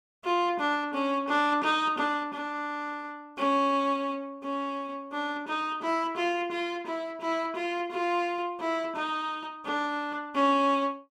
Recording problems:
none

